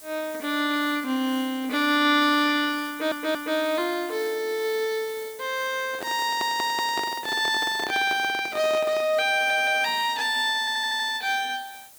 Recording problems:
hiss; SNR 19 dB
stutter; 4 times, first at 3 s
microphone handling noise; from 6 to 9 s; peak -4 dB vs average level

